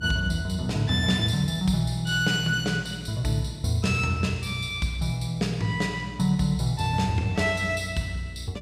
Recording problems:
electrical hum; 60 Hz, harmonics up to 660 Hz, SNR 17 dB

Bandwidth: 15.5 kHz